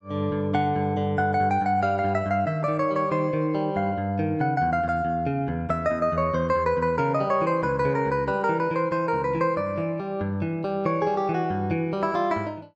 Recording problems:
none

